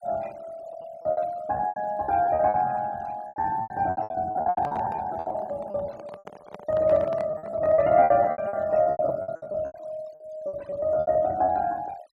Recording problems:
denoising artefacts; signal-to-artefact ratio 25 dB
packet loss; 19% of the sound replaced, filled with repeated pitch periods
handling noise; from 4.5 to 8 s; peak -8 dB vs average level

